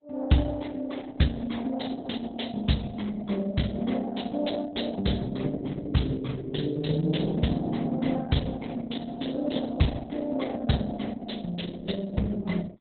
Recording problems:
lossy codec; Opus, log-spectral distance 5 dB, nothing above 4.1 kHz

